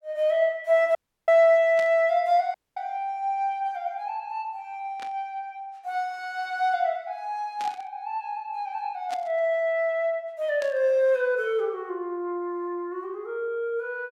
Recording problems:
audio cutting out; at 1 s and at 2.5 s
burst of static; 5 times, first at 2 s; peak -10 dB vs average level

